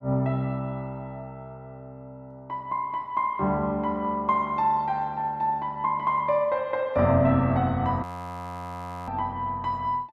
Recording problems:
audio freezing; at 8 s for 1 s

